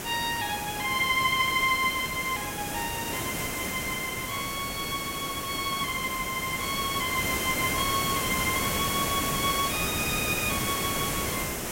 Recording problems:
hiss; slope -4 dB per octave, SNR 2 dB

